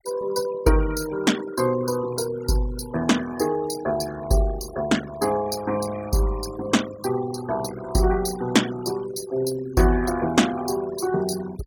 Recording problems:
noise reduction artefacts; signal-to-artefact ratio 15 dB

